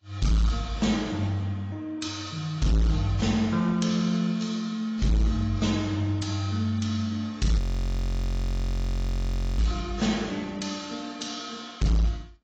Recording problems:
codec artefacts; AAC, log-spectral distance 3 dB
distortion; hard clipping, uneven, signal-to-distortion ratio 7 dB
frozen audio; at 7.5 s for 2 s

